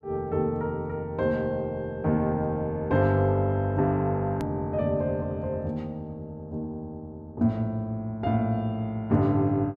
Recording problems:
hard cut with a click; at 4.5 s

